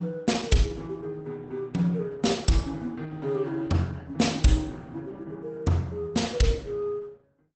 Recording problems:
lossy compression; Opus, log-spectral distance 3 dB, nothing above 8.2 kHz

